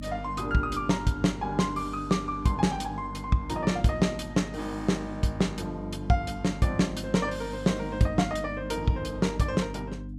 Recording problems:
hum; 50 Hz, harmonics up to 300 Hz, SNR 12 dB

